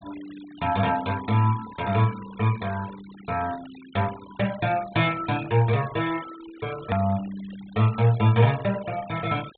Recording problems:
treble cut off; nothing above 4 kHz
denoising artefacts; signal-to-artefact ratio 18 dB
edit click; at 7 s

